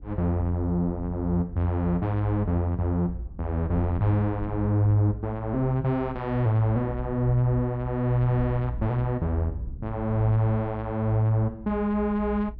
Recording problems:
low-frequency rumble; below 70 Hz, strongest tone 58 Hz, SNR 13 dB

